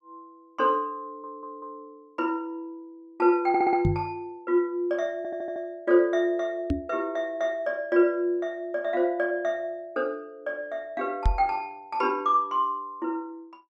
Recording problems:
audio stuttering; at 1 s, at 3.5 s and at 5 s
knock on the microphone; at 4 s, at 6.5 s and at 11 s; peak +6 dB vs average level

